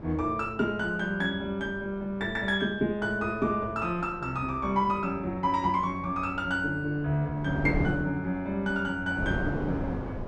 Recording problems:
wind noise; below 450 Hz, SNR 11 dB

